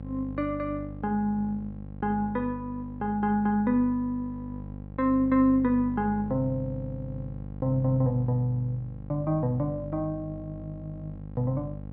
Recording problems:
mains hum; 50 Hz, harmonics up to 800 Hz, SNR 12 dB

